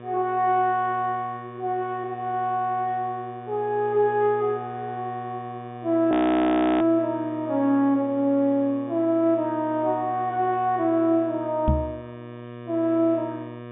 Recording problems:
treble missing; nothing above 3.6 kHz
hum; 60 Hz, harmonics up to 3 kHz, SNR 15 dB
frozen audio; at 6 s for 0.5 s
microphone thump; at 12 s; peak +5 dB vs average level

